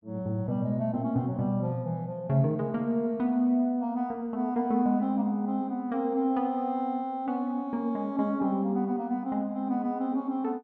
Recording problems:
none

